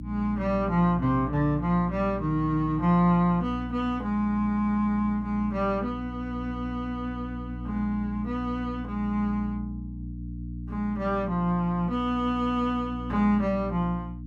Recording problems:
electrical hum; 60 Hz, harmonics up to 300 Hz, SNR 10 dB

